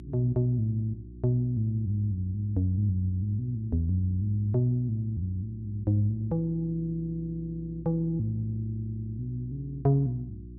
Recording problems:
hum; 60 Hz, harmonics up to 360 Hz, SNR 16 dB

